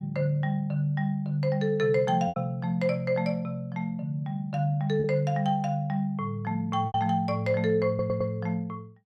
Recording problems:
packet loss; 2% of the sound replaced, filled with repeated pitch periods
stutter; at 8 s

